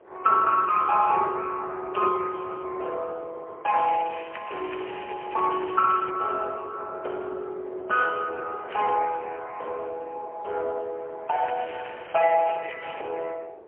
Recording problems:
telephone audio; 320 Hz to 3.2 kHz, AMR-NB, then MP3
wind noise; below 660 Hz, SNR 19 dB
crackling; from 4 to 6 s, at 8.5 s and from 11 to 13 s; loose cable, SNR 17 dB

